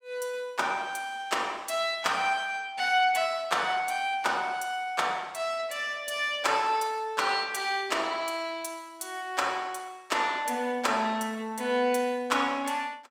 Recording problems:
none

